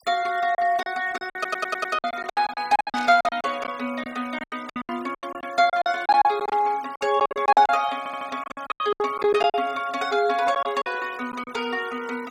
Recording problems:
denoising artefacts; signal-to-artefact ratio 21 dB
lost packets; 16% of the sound replaced, filled with silence
audio stuttering; at 1.5 s and at 8 s
burst of static; at 3 s and at 6.5 s; peak -9 dB vs average level

